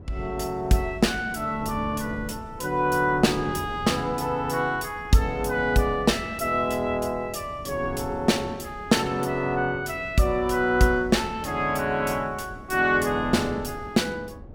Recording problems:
wind noise; below 290 Hz, SNR 16 dB

